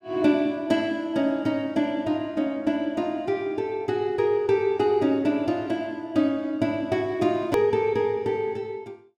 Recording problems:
hard cut with a click; at 7.5 s

